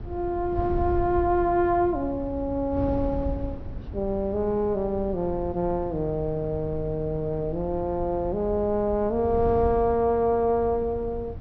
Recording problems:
treble cut off; nothing above 5.8 kHz
wind on the microphone; below 120 Hz, SNR 11 dB

